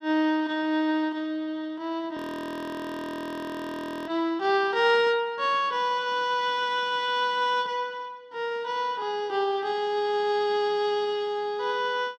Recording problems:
audio freezing; at 2 s for 2 s

